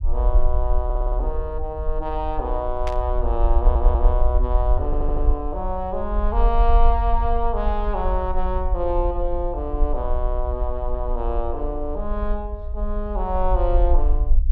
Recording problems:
low-frequency rumble; below 50 Hz, SNR -2 dB
stutter; at 1 s, at 3.5 s and at 5 s
static burst; at 3 s; peak -4 dB vs average level

